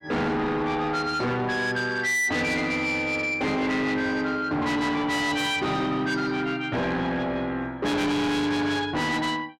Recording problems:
distortion; soft clipping, signal-to-distortion ratio 8 dB

